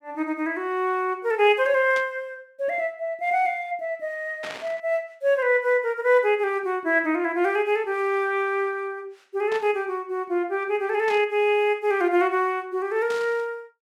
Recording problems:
static burst; 5 times, first at 2 s; peak -8 dB vs average level

